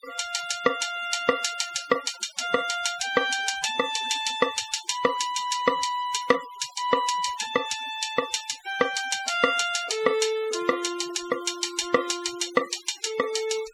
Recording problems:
denoising artefacts; signal-to-artefact ratio 15 dB

